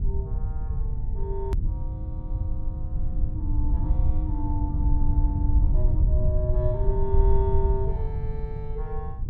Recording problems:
hum; 60 Hz, harmonics up to 960 Hz, SNR 24 dB
low-frequency rumble; below 76 Hz, SNR -7 dB
edit click; at 1.5 s

